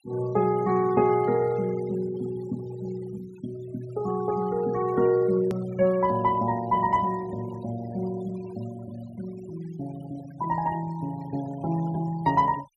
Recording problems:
noise reduction artefacts; signal-to-artefact ratio 20 dB
click at an edit; at 5.5 s

